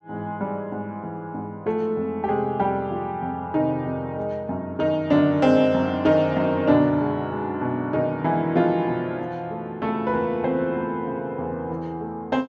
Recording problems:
none

